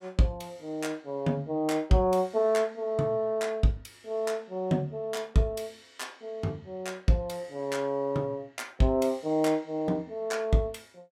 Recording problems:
none

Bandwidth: 16 kHz